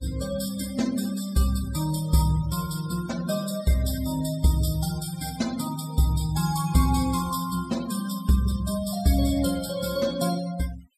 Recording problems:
denoising artefacts; signal-to-artefact ratio 15 dB

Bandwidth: 14.5 kHz